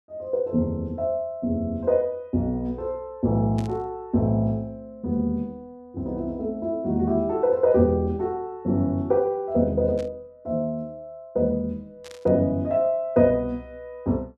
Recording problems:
static burst; at 3.5 s, at 10 s and at 12 s; peak -14 dB vs average level

